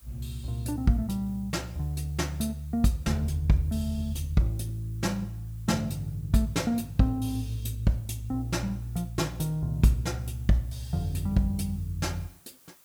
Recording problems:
background hiss; slope -1 dB per octave, SNR 27 dB

